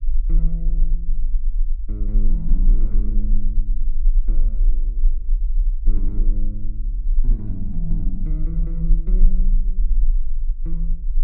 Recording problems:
low-frequency rumble; below 34 Hz, strongest tone 24 Hz, SNR -10 dB

